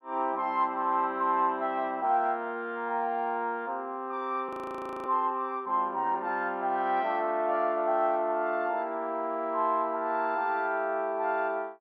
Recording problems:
frozen audio; at 4.5 s for 0.5 s

